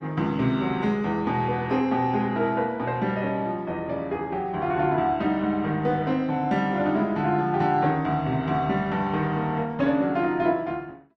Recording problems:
codec artefacts; Opus, log-spectral distance 2 dB

